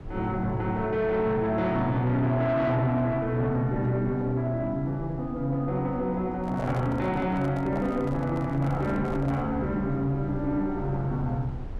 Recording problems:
distorted audio; soft clipping, signal-to-distortion ratio 11 dB
rumble; below 130 Hz, SNR 15 dB
microphone handling noise; from 6.5 to 9.5 s; peak -3 dB vs average level

